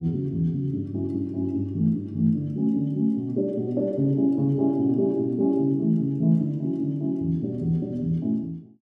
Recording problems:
none

